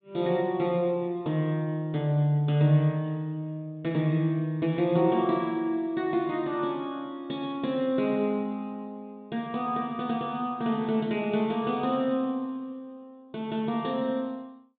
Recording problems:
low-pass filter; nothing above 4 kHz

